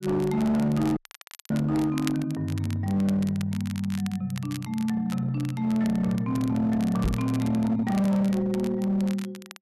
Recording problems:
distorted audio; hard clipping, uneven, signal-to-distortion ratio 11 dB
crackle; vinyl, SNR 19 dB
audio cutting out; at 1 s for 0.5 s
knock on the microphone; at 7 s; peak +4 dB vs average level

